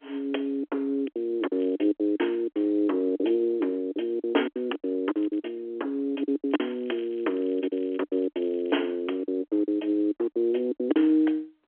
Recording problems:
telephone audio; 280 Hz to 3.3 kHz, G.711
packet loss; 14% of the sound replaced, filled with silence
crackle; at 1.5 s, at 5 s and from 6.5 to 8.5 s; loose cable, SNR 29 dB

